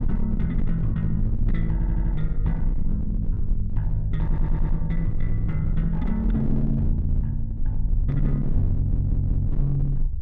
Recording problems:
distortion; hard clipping, signal-to-distortion ratio 11 dB
rumble; below 50 Hz, SNR 2 dB
stutter; at 1.5 s, at 4 s and at 9 s

